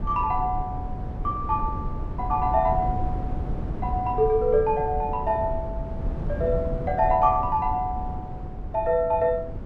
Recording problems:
low-frequency rumble; below 150 Hz, SNR 8 dB

